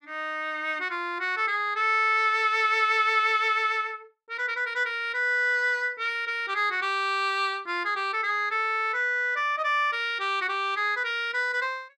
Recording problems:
none

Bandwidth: 13.5 kHz